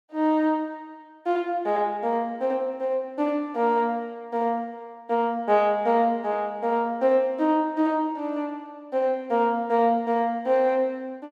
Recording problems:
none

